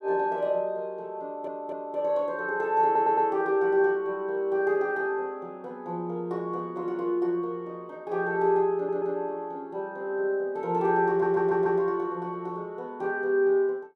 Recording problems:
audio stuttering; 4 times, first at 1 s

